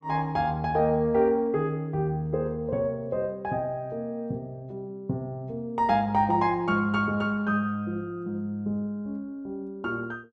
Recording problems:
none

